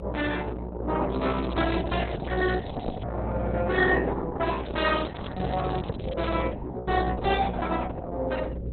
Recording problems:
lossy compression; Opus, log-spectral distance 9 dB, nothing above 4 kHz
mains hum; 60 Hz, harmonics up to 540 Hz, SNR 9 dB
crackling; from 1 to 3 s and from 4.5 to 6.5 s; loose cable, SNR 17 dB

